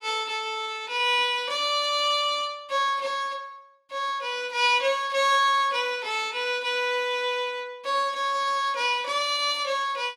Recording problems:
none

